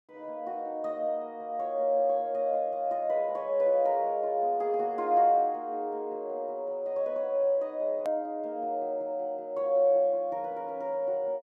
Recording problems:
click at an edit; at 8 s

